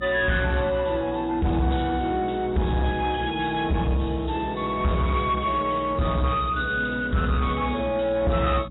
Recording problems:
lossy codec; AAC, log-spectral distance 4 dB, nothing above 3.8 kHz
distorted audio; soft clipping, signal-to-distortion ratio 11 dB
electrical hum; 60 Hz, harmonics up to 300 Hz, SNR 16 dB

